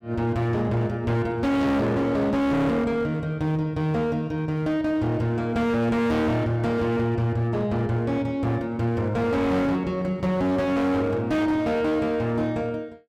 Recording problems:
distortion; hard clipping, signal-to-distortion ratio 7 dB

